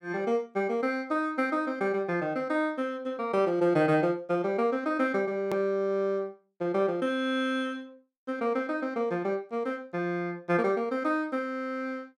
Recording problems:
edit click; at 5.5 s

